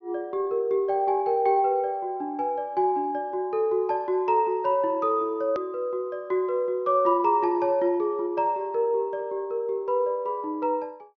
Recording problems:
treble missing; nothing above 6.4 kHz
hard cut with a click; at 5.5 s

